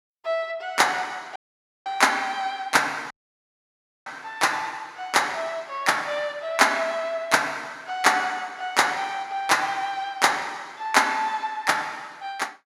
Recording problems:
dropout; at 1.5 s for 0.5 s and at 3 s for 1 s

